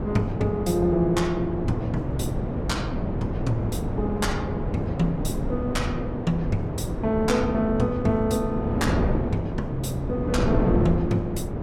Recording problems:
wind on the microphone; below 360 Hz, SNR 1 dB

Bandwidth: 17.5 kHz